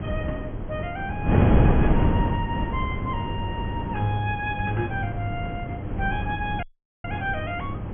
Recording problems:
electrical hum; 50 Hz, harmonics up to 1 kHz, SNR 8 dB
wind on the microphone; below 290 Hz, SNR -3 dB
dropout; at 6.5 s

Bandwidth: 3.5 kHz